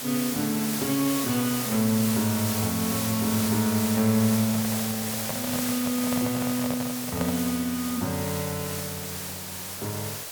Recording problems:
hiss; slope -1 dB per octave, SNR 3 dB
microphone handling noise; from 4.5 to 7.5 s; peak 0 dB vs average level

